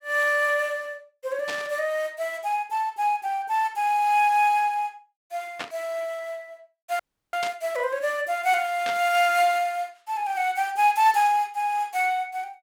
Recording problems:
burst of static; 4 times, first at 1.5 s; peak -4 dB vs average level
dropout; at 7 s

